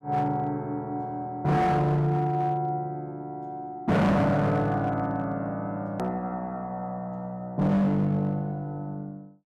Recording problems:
distorted audio; hard clipping, signal-to-distortion ratio 7 dB
hard cut with a click; at 6 s

